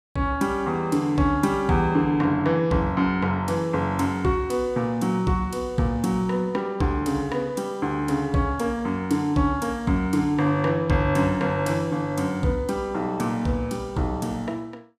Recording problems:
none

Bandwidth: 15 kHz